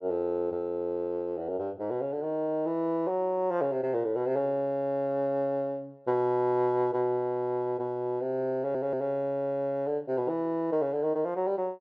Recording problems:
audio stuttering; at 8.5 s

